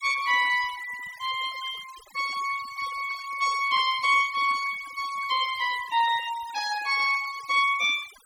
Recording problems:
denoising artefacts; signal-to-artefact ratio 16 dB

